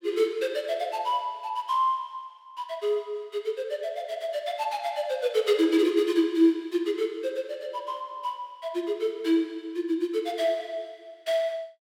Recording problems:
none

